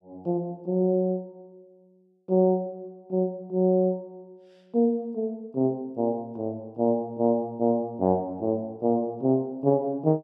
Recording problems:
none

